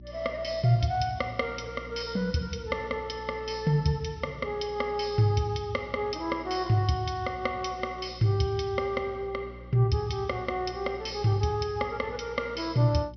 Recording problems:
treble cut off; nothing above 5.9 kHz
mains hum; 60 Hz, harmonics up to 360 Hz, SNR 18 dB

